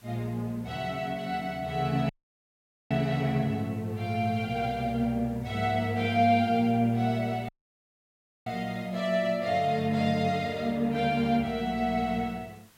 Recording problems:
background hiss; slope -1 dB per octave, SNR 29 dB
dropout; at 2 s for 1 s and at 7.5 s for 1 s

